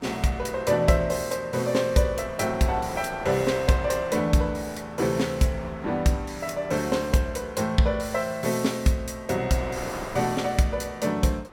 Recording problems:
wind noise; below 1.3 kHz, SNR 17 dB

